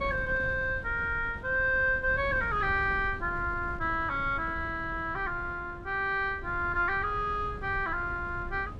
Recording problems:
wind on the microphone; below 140 Hz, SNR 13 dB

